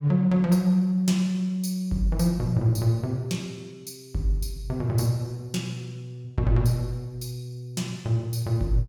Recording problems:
none

